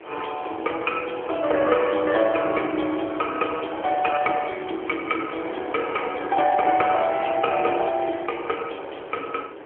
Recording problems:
phone line; 260 Hz to 3.2 kHz, AMR-NB
wind on the microphone; below 1.1 kHz, SNR 15 dB

